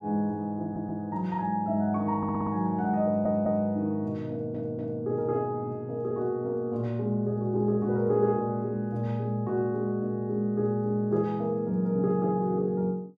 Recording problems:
audio stuttering; 4 times, first at 0.5 s

